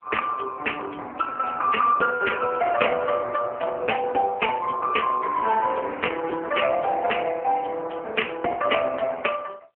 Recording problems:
phone line; 300 Hz to 3 kHz, AMR-NB

